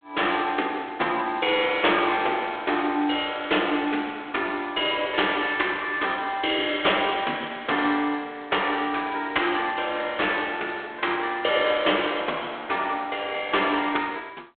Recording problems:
phone line; 260 Hz to 3.6 kHz, G.726

